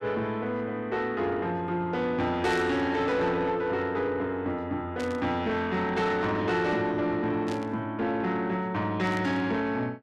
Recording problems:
distortion; soft clipping, signal-to-distortion ratio 12 dB
static burst; 4 times, first at 2.5 s; peak -10 dB vs average level

